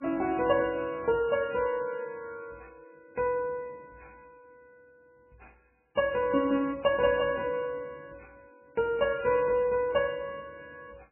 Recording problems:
lossy compression; MP3, log-spectral distance 3 dB, nothing above 2.5 kHz

